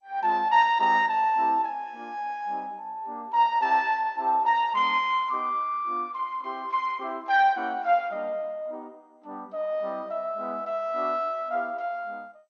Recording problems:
lossy codec; MP2, then MP2, log-spectral distance 2 dB

